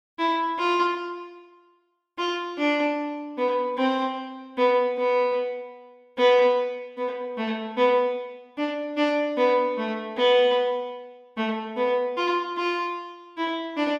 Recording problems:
none

